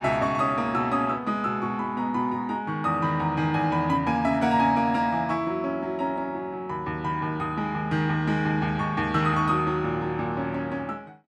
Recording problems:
none

